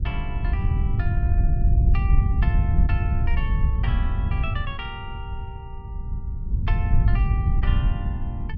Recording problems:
wind noise; below 94 Hz, SNR -12 dB

